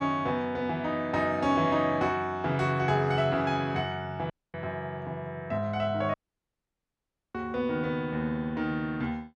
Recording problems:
audio cutting out; at 4.5 s and at 6 s for 1 s

